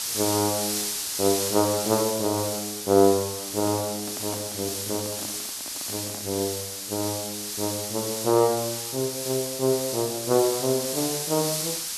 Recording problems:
hiss; slope +3 dB per octave, SNR 3 dB
microphone handling noise; from 3.5 to 6.5 s; peak -7 dB vs average level

